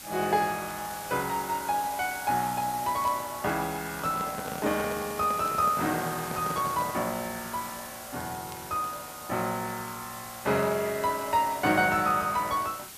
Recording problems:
hiss; slope 0 dB per octave, SNR 11 dB
crackle; vinyl, SNR 29 dB
handling noise; from 4 to 7 s; peak -4 dB vs average level

